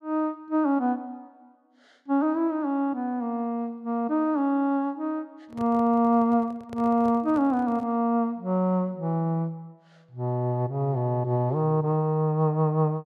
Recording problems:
microphone handling noise; from 5.5 to 8 s; peak -12 dB vs average level

